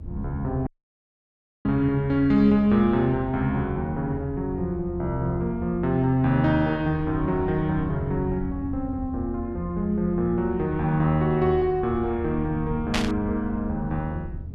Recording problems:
rumble; below 84 Hz, SNR 12 dB
dropout; at 0.5 s for 1 s
burst of static; at 13 s; peak +2 dB vs average level

